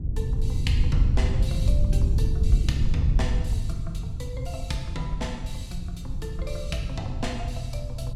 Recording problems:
wind noise; below 88 Hz, SNR -6 dB

